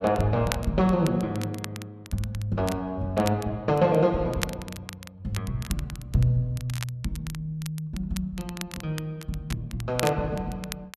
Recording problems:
crackle; vinyl, SNR 13 dB

